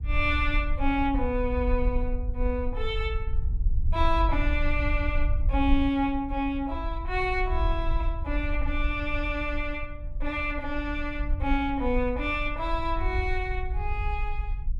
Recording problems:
low-frequency rumble; below 60 Hz, SNR 2 dB

